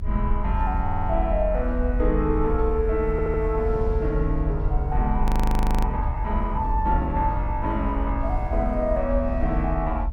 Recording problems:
low-frequency rumble; below 64 Hz, SNR 2 dB
wind noise; below 180 Hz, SNR 14 dB
stutter; at 1 s and at 3 s
frozen audio; at 5 s for 0.5 s

